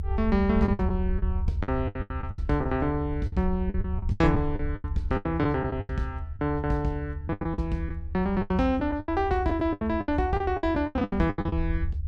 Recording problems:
low-frequency rumble; below 78 Hz, SNR 6 dB
lost packets; 16% of the sound replaced, filled with the last packet

